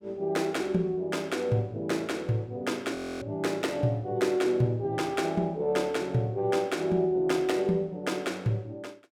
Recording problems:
audio freezing; at 3 s

